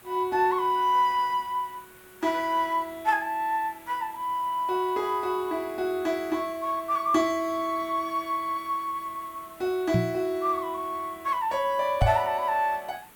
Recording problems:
background hiss; SNR 23 dB
microphone thump; at 10 s and at 12 s; peak +7 dB vs average level

